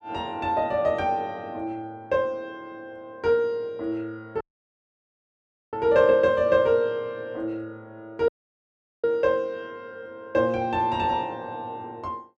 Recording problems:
dropout; at 4.5 s for 1.5 s and at 8.5 s for 1 s

